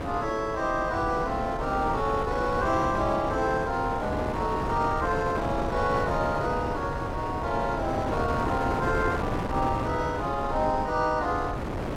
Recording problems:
wind on the microphone; below 730 Hz, SNR 4 dB

